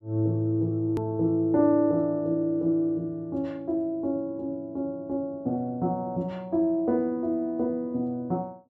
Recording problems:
click at an edit; at 1 s

